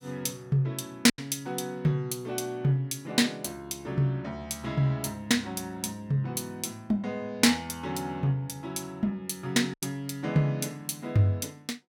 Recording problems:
packet loss; 1.4% of the sound replaced, filled with silence

